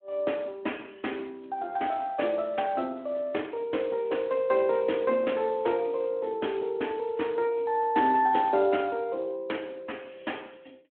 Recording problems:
telephone audio; 240 Hz to 3.4 kHz, Speex

